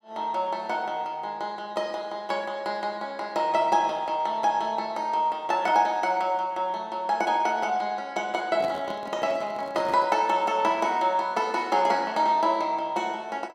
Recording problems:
microphone handling noise; from 8.5 to 10 s; peak -7 dB vs average level

